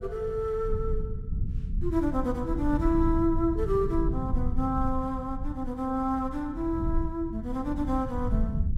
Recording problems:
rumble; below 94 Hz, SNR 4 dB

